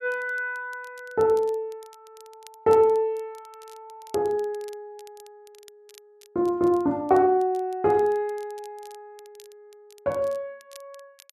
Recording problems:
crackling; vinyl, SNR 28 dB

